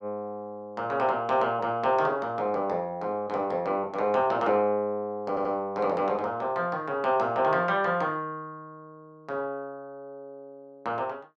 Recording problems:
audio stuttering; at 5.5 s

